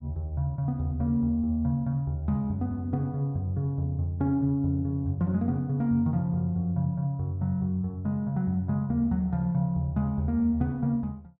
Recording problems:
none

